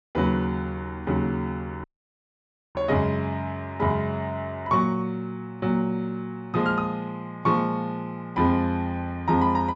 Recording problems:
low-pass filter; nothing above 8 kHz
audio cutting out; at 2 s for 1 s

